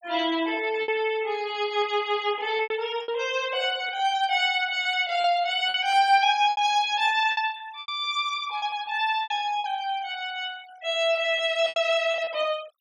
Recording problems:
noise reduction artefacts; signal-to-artefact ratio 22 dB
lost packets; 8% of the sound replaced, filled with repeated pitch periods

